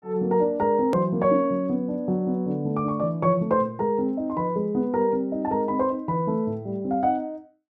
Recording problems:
click at an edit; at 1 s

